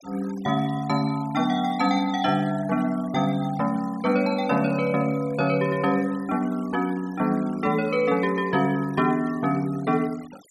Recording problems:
noise reduction artefacts; signal-to-artefact ratio 21 dB

